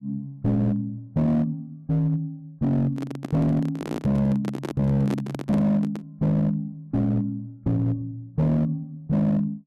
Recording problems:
distorted audio; hard clipping, signal-to-distortion ratio 10 dB
handling noise; from 3 to 6 s; peak -1 dB vs average level

